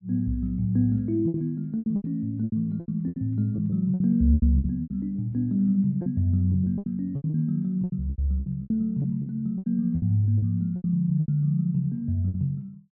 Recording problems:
packet loss; 15% of the sound replaced, filled with repeated pitch periods

